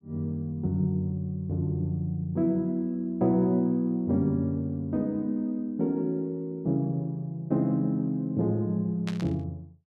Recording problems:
burst of static; at 9 s; peak -6 dB vs average level

